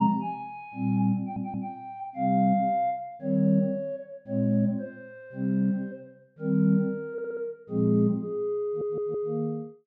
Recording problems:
stutter; at 1 s, at 7 s and at 8.5 s

